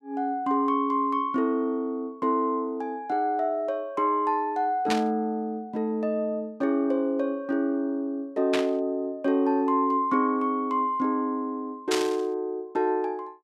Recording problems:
burst of static; at 5 s, at 8.5 s and at 12 s; peak +2 dB vs average level

